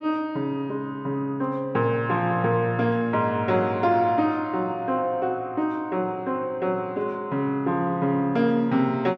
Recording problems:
none

